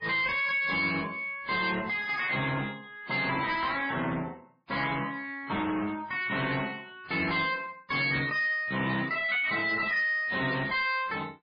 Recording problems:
lossy compression; MP3, then MP3, log-spectral distance 5 dB, nothing above 5 kHz
distorted audio; soft clipping, signal-to-distortion ratio 6 dB

